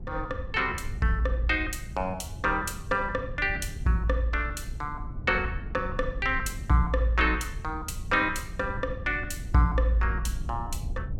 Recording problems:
rumble; below 100 Hz, SNR 10 dB

